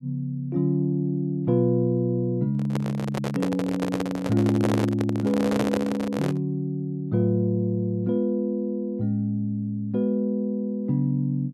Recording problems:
microphone handling noise; from 2.5 to 6.5 s; peak +3 dB vs average level

